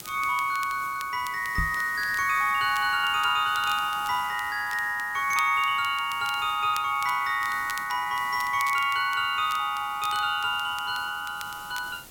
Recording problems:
background hiss; slope -2 dB per octave, SNR 19 dB
crackling; vinyl, SNR 19 dB
knock on the microphone; at 1.5 s; peak -1 dB vs average level

